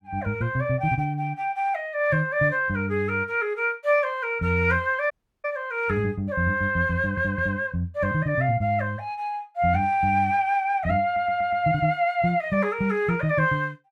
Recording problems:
audio cutting out; at 5 s
stutter; at 7 s and at 11 s

